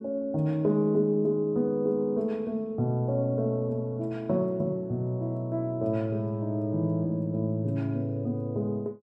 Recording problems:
none

